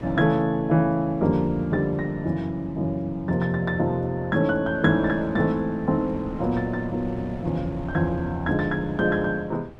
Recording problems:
wind noise; below 320 Hz, SNR 16 dB

